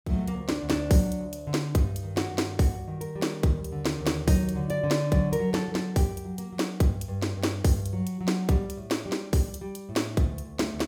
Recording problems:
none

